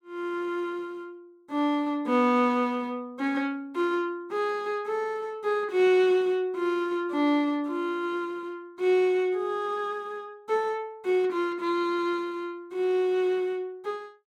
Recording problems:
none

